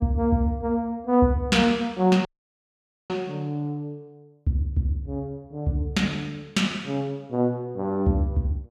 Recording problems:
dropout; at 2.5 s for 1 s

